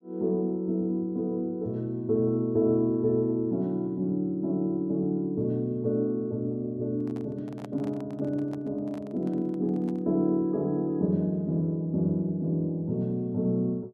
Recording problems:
microphone handling noise; from 7 to 10 s; peak -12 dB vs average level

